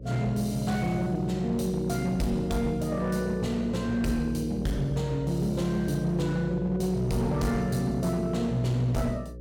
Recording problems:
distortion; hard clipping, uneven, signal-to-distortion ratio 11 dB
hum; 60 Hz, harmonics up to 540 Hz, SNR 13 dB

